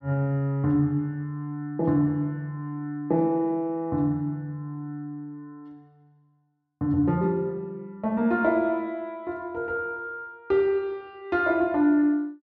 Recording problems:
none

